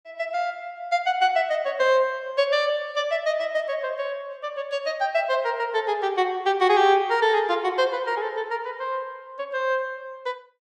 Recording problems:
none

